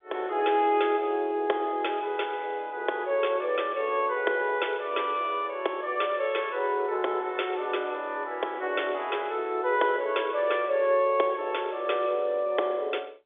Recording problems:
telephone audio; 320 Hz to 3.6 kHz, G.711

